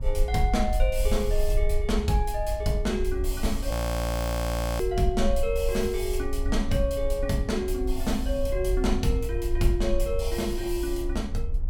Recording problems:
low-frequency rumble; below 58 Hz, SNR 3 dB
wind on the microphone; below 330 Hz, SNR 18 dB
frozen audio; at 3.5 s for 1 s

